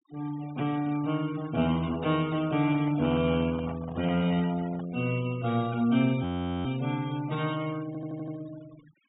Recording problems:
low-pass filter; nothing above 4 kHz
noise reduction artefacts; signal-to-artefact ratio 20 dB
microphone handling noise; from 2.5 to 5 s; peak -8 dB vs average level
frozen audio; at 6 s
audio stuttering; at 8 s

